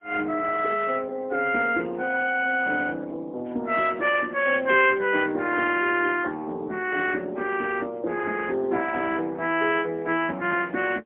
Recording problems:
telephone audio; 240 Hz to 3.3 kHz, AMR-NB, then MP3

